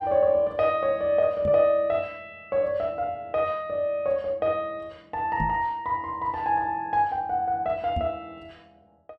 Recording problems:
knock on the microphone; at 1.5 s, at 5.5 s and at 8 s; peak -1 dB vs average level

